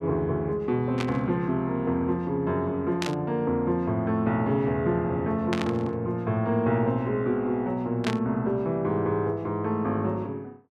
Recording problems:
burst of static; 4 times, first at 1 s; peak 0 dB vs average level

